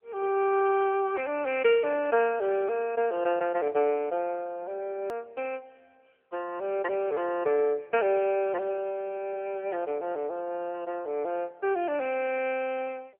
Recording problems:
telephone audio; 340 Hz to 3.1 kHz, AMR-NB
edit click; at 5 s

